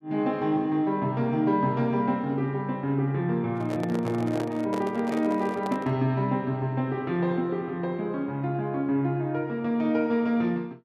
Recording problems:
handling noise; from 3.5 to 6 s; peak -3 dB vs average level

